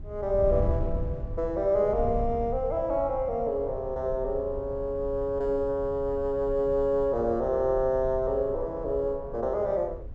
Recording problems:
treble missing; nothing above 8 kHz
wind noise; below 96 Hz, SNR 11 dB

